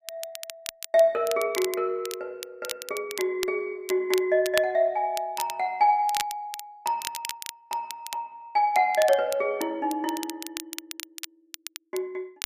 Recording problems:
crackling; vinyl, SNR 11 dB

